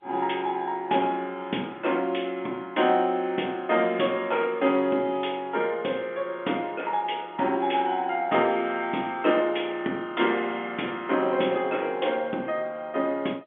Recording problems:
telephone audio; 220 Hz to 3.5 kHz, G.711

